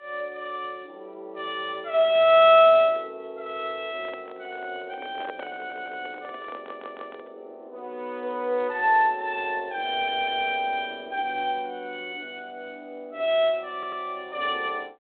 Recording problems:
telephone audio; 280 Hz to 3.5 kHz, G.726
microphone handling noise; from 4 to 7.5 s; peak -8 dB vs average level
stutter; 4 times, first at 5.5 s

